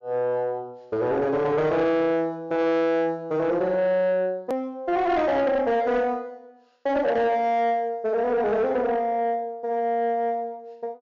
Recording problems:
treble cut off; nothing above 7.1 kHz
distorted audio; soft clipping, signal-to-distortion ratio 11 dB
click at an edit; at 4.5 s

